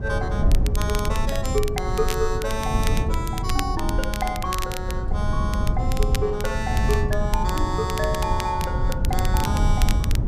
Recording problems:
low-frequency rumble; below 96 Hz, SNR -2 dB
crackle; vinyl, SNR 8 dB

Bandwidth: 14.5 kHz